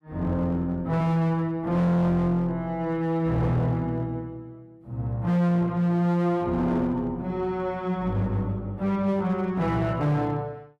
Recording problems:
distortion; hard clipping, uneven, signal-to-distortion ratio 7 dB

